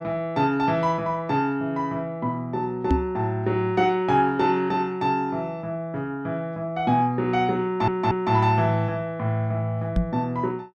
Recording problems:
microphone bump; at 3 s and at 10 s; peak +6 dB vs average level
stutter; at 7.5 s

